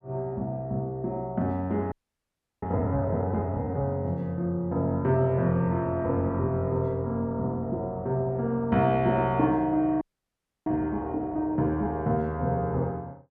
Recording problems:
frozen audio; at 2 s for 0.5 s and at 10 s for 0.5 s

